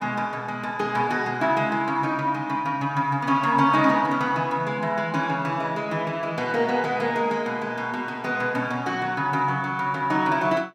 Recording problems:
none

